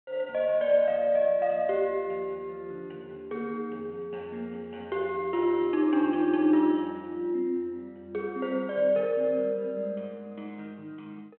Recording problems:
telephone audio; 220 Hz to 3.3 kHz, G.726

